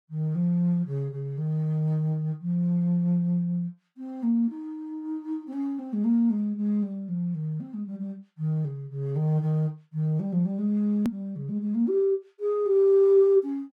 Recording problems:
click at an edit; at 11 s

